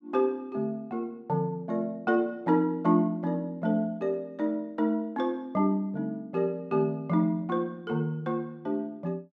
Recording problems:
none

